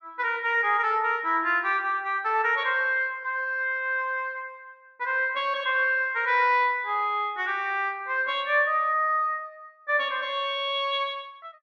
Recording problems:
treble missing; nothing above 8 kHz

